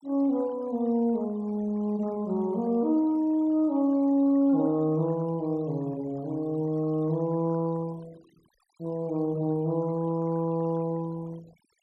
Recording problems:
noise reduction artefacts; signal-to-artefact ratio 26 dB

